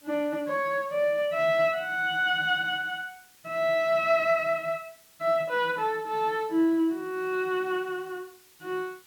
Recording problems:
hiss; slope +1 dB per octave, SNR 28 dB

